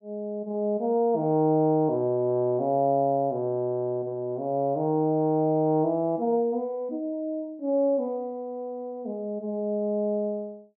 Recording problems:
none

